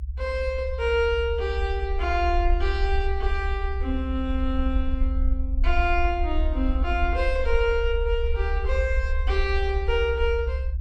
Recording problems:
low-frequency rumble; below 66 Hz, SNR 1 dB

